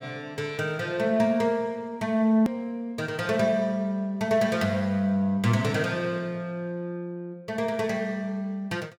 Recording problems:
hard cut with a click; at 2.5 s

